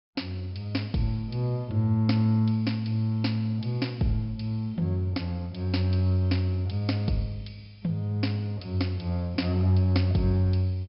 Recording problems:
treble missing; nothing above 5.3 kHz

